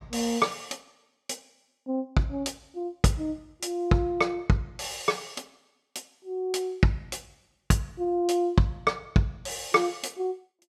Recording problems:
none

